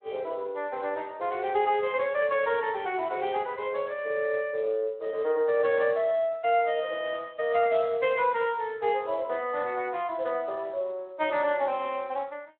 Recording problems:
phone line; 340 Hz to 3.4 kHz, Speex

